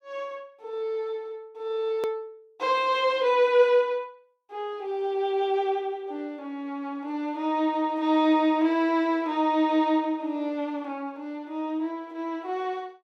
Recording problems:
edit click; at 2 s

